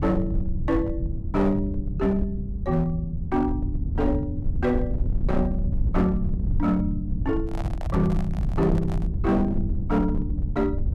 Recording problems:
distortion; hard clipping, signal-to-distortion ratio 12 dB
rumble; below 100 Hz, SNR 3 dB
handling noise; from 7.5 to 9 s; peak -7 dB vs average level

